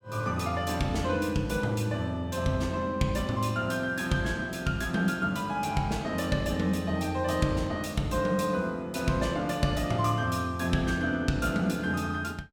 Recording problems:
none

